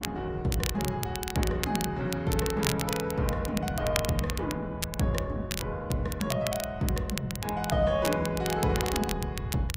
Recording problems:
codec artefacts; Opus, log-spectral distance 2 dB, nothing above 15.6 kHz
wind on the microphone; below 120 Hz, SNR 11 dB
crackling; vinyl, SNR 7 dB

